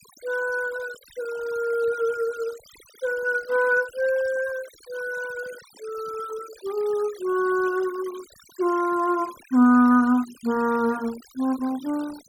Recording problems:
noise reduction artefacts; signal-to-artefact ratio 21 dB

